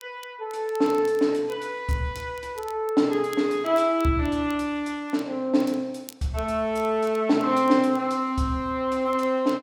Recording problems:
crackle; vinyl, SNR 26 dB

